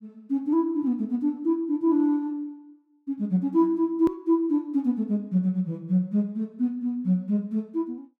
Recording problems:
edit click; at 4 s

